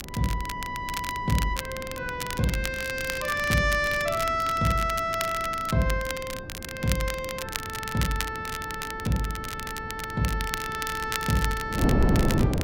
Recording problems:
wind noise; below 300 Hz, SNR 6 dB
crackling; vinyl, SNR 8 dB

